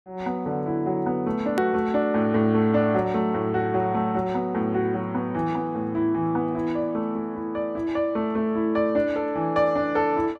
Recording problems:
hard cut with a click; at 1.5 s

